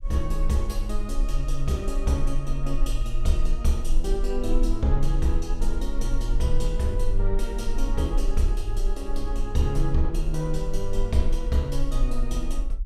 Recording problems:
low-frequency rumble; below 34 Hz, strongest tone 20 Hz, SNR 1 dB

